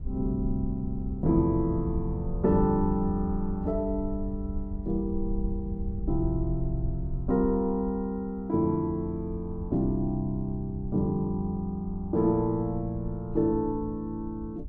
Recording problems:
wind noise; below 72 Hz, SNR 9 dB

